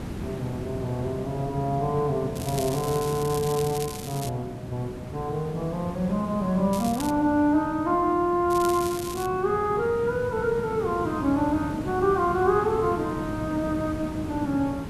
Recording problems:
background hiss; slope -7 dB per octave, SNR 9 dB
crackle; from 2.5 to 4.5 s, at 6.5 s and at 8.5 s; loose cable, SNR 12 dB

